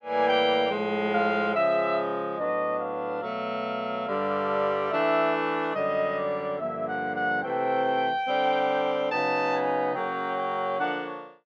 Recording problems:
none

